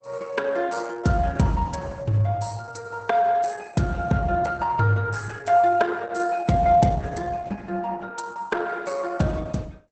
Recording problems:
lossy codec; Opus, log-spectral distance 4 dB, nothing above 8.2 kHz

